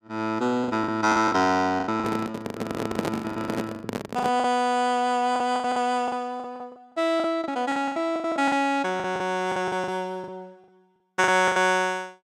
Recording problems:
lost packets; 16% of the sound replaced, filled with the last packet
handling noise; from 2 to 4.5 s; peak +1 dB vs average level

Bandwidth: 15 kHz